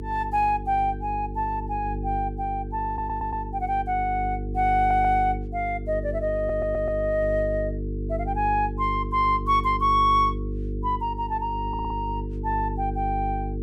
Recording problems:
hum; 50 Hz, harmonics up to 450 Hz, SNR 7 dB
audio stuttering; 4 times, first at 3 s

